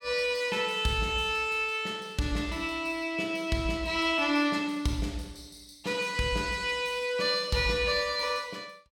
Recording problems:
none

